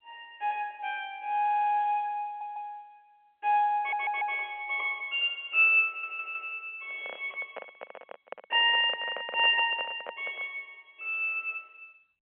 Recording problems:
telephone audio; 300 Hz to 3.3 kHz, G.711
audio stuttering; 4 times, first at 1.5 s
microphone handling noise; from 7 to 10 s; peak -7 dB vs average level

